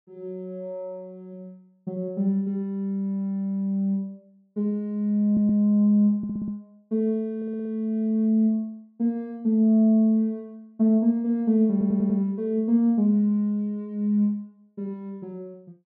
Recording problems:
audio stuttering; 4 times, first at 5.5 s

